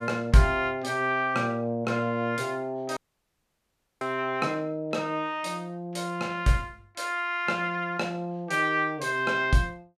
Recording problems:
dropout; at 3 s for 1 s

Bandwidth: 14.5 kHz